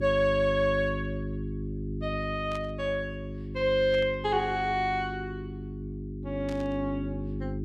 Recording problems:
hum; 50 Hz, harmonics up to 400 Hz, SNR 7 dB
burst of static; at 2.5 s, at 4 s and at 6.5 s; peak -12 dB vs average level

